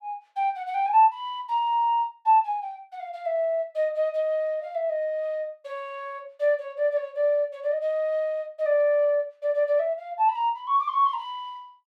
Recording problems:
none

